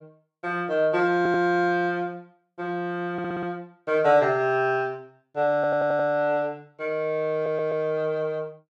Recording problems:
audio stuttering; 4 times, first at 1 s

